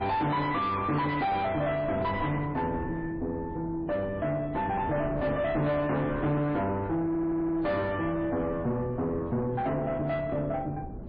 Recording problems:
codec artefacts; MP3, log-spectral distance 2 dB
distorted audio; soft clipping, signal-to-distortion ratio 7 dB
wind on the microphone; below 370 Hz, SNR 12 dB
stutter; at 7 s

